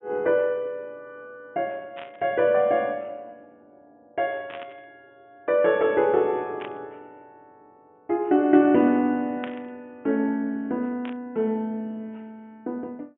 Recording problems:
treble cut off; nothing above 3.4 kHz
static burst; 5 times, first at 2 s; peak -8 dB vs average level

